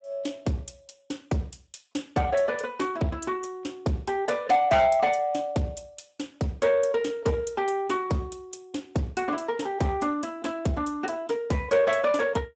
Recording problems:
codec artefacts; Speex, log-spectral distance 4 dB, nothing above 7.8 kHz
distorted audio; soft clipping, signal-to-distortion ratio 10 dB

